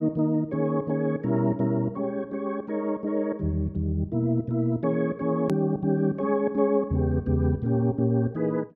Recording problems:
hard cut with a click; at 5.5 s

